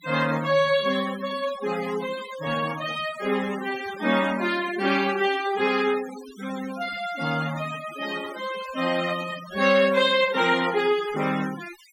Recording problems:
noise reduction artefacts; signal-to-artefact ratio 15 dB

